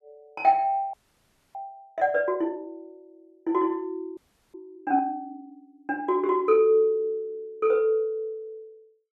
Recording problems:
audio freezing; at 1 s for 0.5 s and at 4 s

